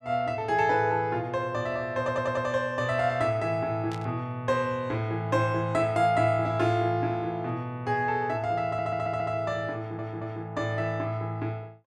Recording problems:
audio stuttering; at 2 s, at 8.5 s and at 10 s
static burst; at 4 s; peak -11 dB vs average level

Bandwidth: 13.5 kHz